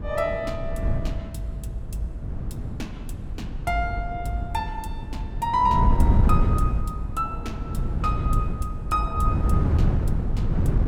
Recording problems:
wind on the microphone; below 130 Hz, SNR -2 dB

